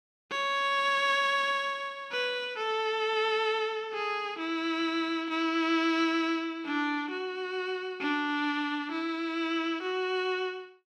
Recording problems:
none

